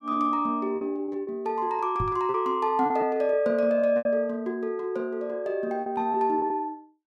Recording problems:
packet loss; 7% of the sound replaced, filled with repeated pitch periods
microphone bump; at 2 s; peak -1 dB vs average level

